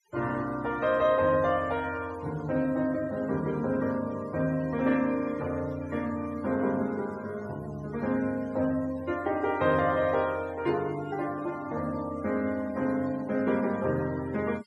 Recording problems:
denoising artefacts; signal-to-artefact ratio 20 dB

